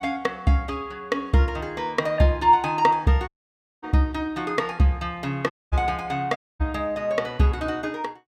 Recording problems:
audio cutting out; at 3.5 s for 0.5 s, at 5.5 s and at 6.5 s

